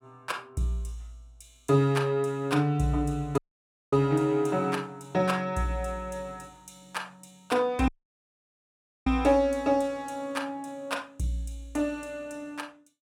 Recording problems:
dropout; at 3.5 s for 0.5 s and at 8 s for 1 s

